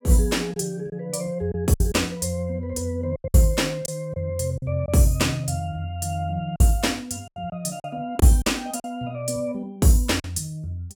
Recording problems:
lost packets; 6% of the sound replaced, filled with silence

